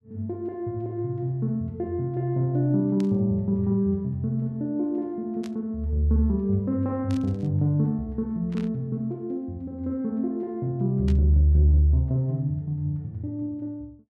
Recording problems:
static burst; 5 times, first at 3 s; peak -13 dB vs average level

